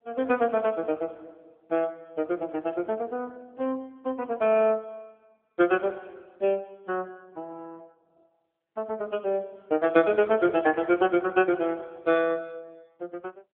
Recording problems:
telephone audio; 240 Hz to 3.3 kHz, AMR-NB

